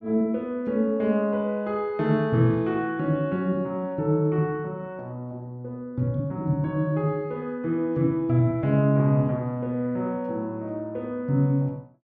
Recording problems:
none

